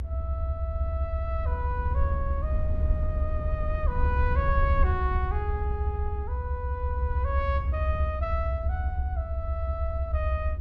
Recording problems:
low-frequency rumble; below 80 Hz, SNR -5 dB

